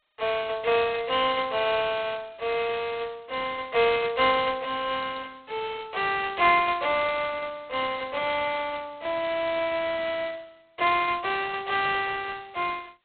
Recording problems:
phone line; 340 Hz to 3.8 kHz, G.726

